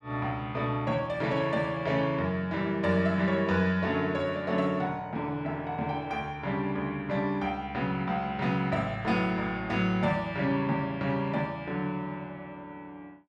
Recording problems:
none

